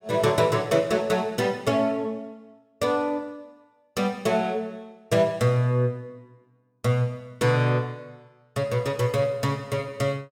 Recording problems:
none

